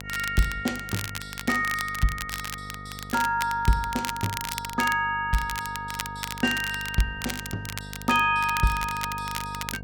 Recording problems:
electrical hum; 50 Hz, harmonics up to 950 Hz, SNR 15 dB
crackling; vinyl, SNR 9 dB

